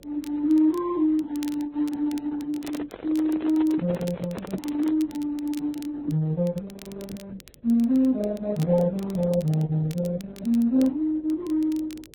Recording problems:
codec artefacts; Opus, then Vorbis, log-spectral distance 2 dB
hum; 50 Hz, harmonics up to 600 Hz, SNR 30 dB
crackling; vinyl, SNR 24 dB
microphone handling noise; from 2.5 to 5 s; peak -4 dB vs average level

